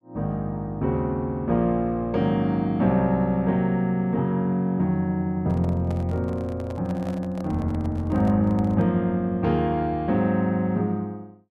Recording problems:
microphone handling noise; from 5.5 to 9 s; peak -10 dB vs average level

